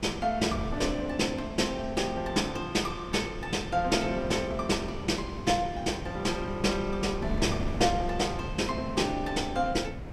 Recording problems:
wind noise; below 260 Hz, SNR 9 dB

